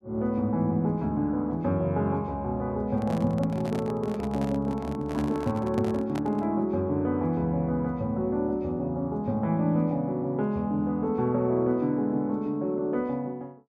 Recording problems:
handling noise; from 3 to 6.5 s; peak -6 dB vs average level

